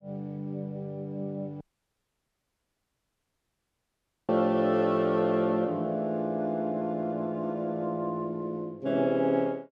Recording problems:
audio cutting out; at 1.5 s for 2.5 s

